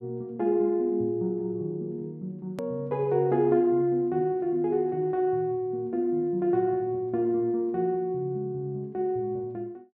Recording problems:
hard cut with a click; at 2.5 s

